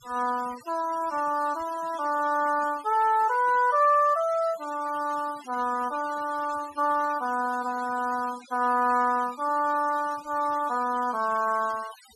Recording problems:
noise reduction artefacts; signal-to-artefact ratio 21 dB

